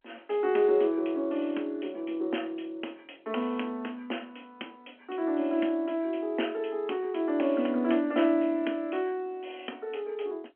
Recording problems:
phone line; 220 Hz to 3.2 kHz, G.711

